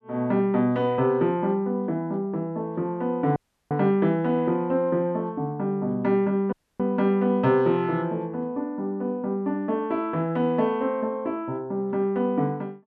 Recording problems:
audio cutting out; at 3.5 s and at 6.5 s

